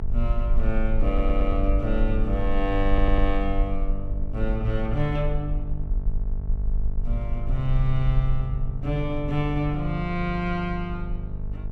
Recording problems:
mains hum; 50 Hz, harmonics up to 700 Hz, SNR 7 dB
low-frequency rumble; below 42 Hz, SNR 2 dB
audio stuttering; at 1 s and at 3 s

